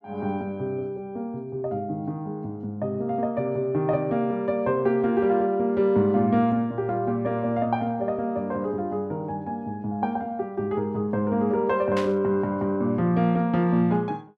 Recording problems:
static burst; at 12 s; peak -5 dB vs average level

